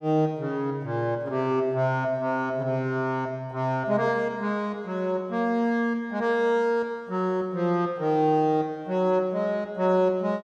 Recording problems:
none

